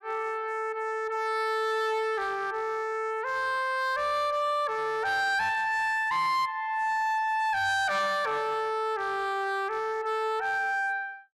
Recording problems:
distortion; hard clipping, uneven, signal-to-distortion ratio 11 dB

